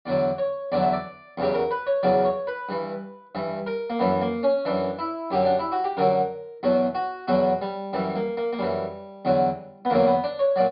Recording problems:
low-pass filter; nothing above 4.9 kHz

